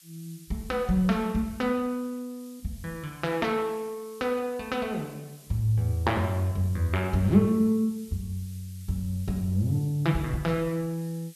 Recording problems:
background hiss; SNR 23 dB

